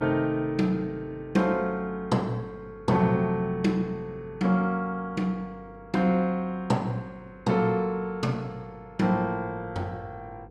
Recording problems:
hum; 50 Hz, harmonics up to 500 Hz, SNR 24 dB

